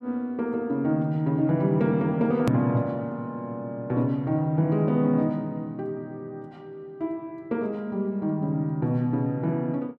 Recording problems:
click at an edit; at 2.5 s

